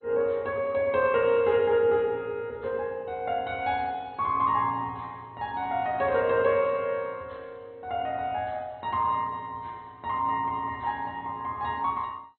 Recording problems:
lossy compression; MP2, log-spectral distance 2 dB, nothing above 3.8 kHz

